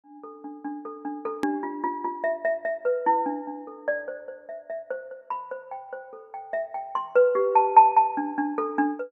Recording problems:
click at an edit; at 1.5 s

